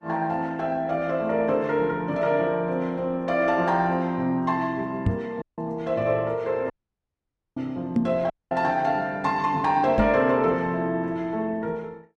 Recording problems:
lossy compression; Opus, log-spectral distance 2 dB, nothing above 10.7 kHz
knock on the microphone; at 5 s, at 8 s and at 10 s; peak +7 dB vs average level
dropout; at 5.5 s, at 6.5 s for 1 s and at 8.5 s

